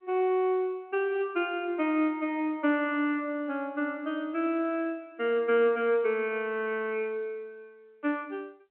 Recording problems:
telephone audio; 240 Hz to 3.2 kHz, G.711

